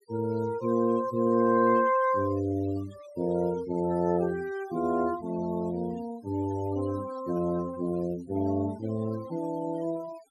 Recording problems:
denoising artefacts; signal-to-artefact ratio 21 dB

